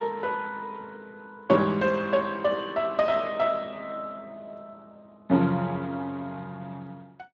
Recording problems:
lossy compression; Speex, log-spectral distance 3 dB

